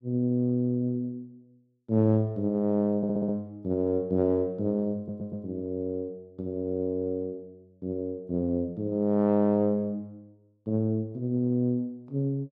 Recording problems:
audio stuttering; at 3 s and at 5 s

